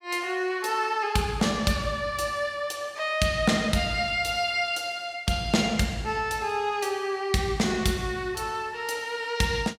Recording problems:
none

